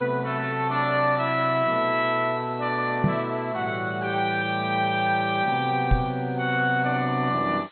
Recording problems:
lossy codec; MP2, log-spectral distance 5 dB, nothing above 3.6 kHz
background hiss; SNR 29 dB
microphone thump; at 3 s and at 6 s; peak +6 dB vs average level

